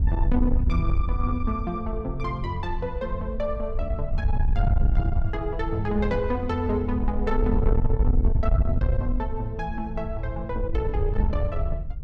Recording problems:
distorted audio; soft clipping, signal-to-distortion ratio 12 dB
wind noise; below 76 Hz, SNR -1 dB

